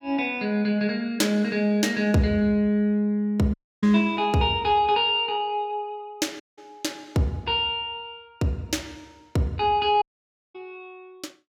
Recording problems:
audio cutting out; at 3.5 s, at 6.5 s and at 10 s for 0.5 s

